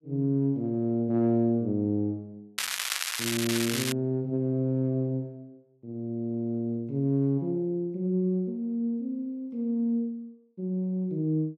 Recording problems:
crackling; from 2.5 to 4 s; loose cable, SNR 1 dB

